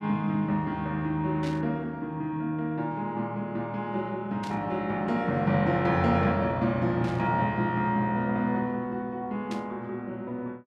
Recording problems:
burst of static; 4 times, first at 1.5 s; peak -9 dB vs average level

